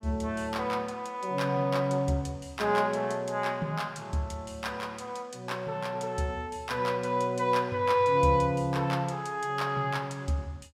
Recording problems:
none

